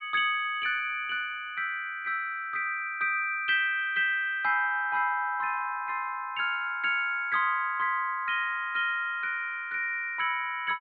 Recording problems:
treble missing; nothing above 4.5 kHz

